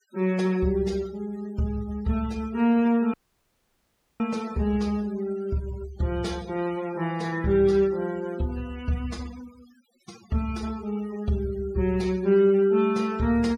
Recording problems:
noise reduction artefacts; signal-to-artefact ratio 22 dB
audio cutting out; at 3 s for 1 s

